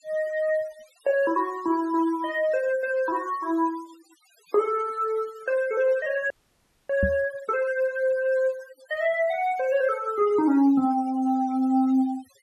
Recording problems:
noise reduction artefacts; signal-to-artefact ratio 23 dB
audio freezing; at 6.5 s for 0.5 s
microphone thump; at 7 s; peak +2 dB vs average level

